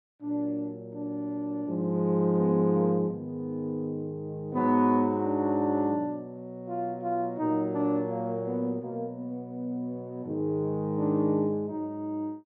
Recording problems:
none

